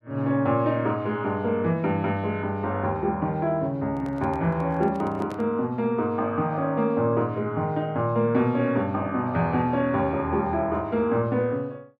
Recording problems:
handling noise; from 4 to 5.5 s; peak -9 dB vs average level

